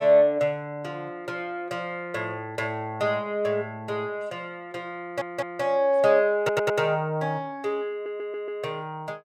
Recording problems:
audio stuttering; at 5 s, at 6.5 s and at 8 s

